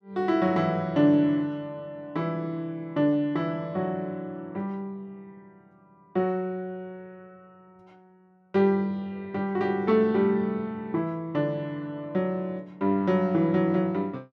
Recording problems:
none

